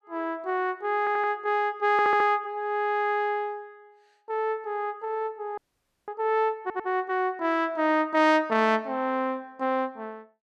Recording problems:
audio stuttering; at 1 s, at 2 s and at 6.5 s
frozen audio; at 5.5 s for 0.5 s

